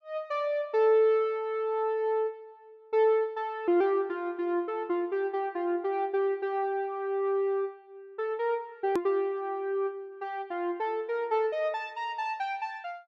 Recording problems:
hard cut with a click; at 9 s

